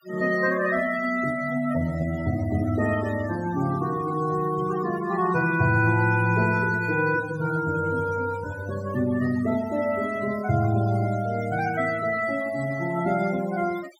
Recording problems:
noise reduction artefacts; signal-to-artefact ratio 16 dB

